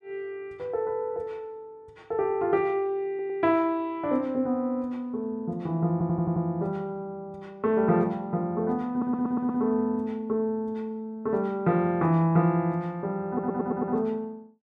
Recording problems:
stutter; 4 times, first at 3 s

